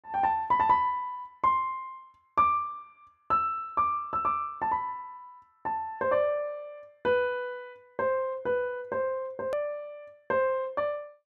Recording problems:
hard cut with a click; at 9.5 s

